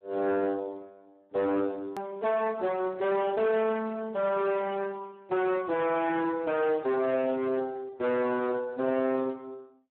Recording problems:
phone line; 240 Hz to 2.9 kHz, Speex
distorted audio; hard clipping, uneven, signal-to-distortion ratio 6 dB
hard cut with a click; at 2 s

